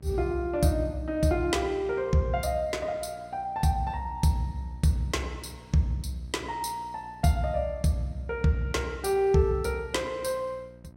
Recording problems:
hum; 60 Hz, harmonics up to 960 Hz, SNR 23 dB

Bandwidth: 16 kHz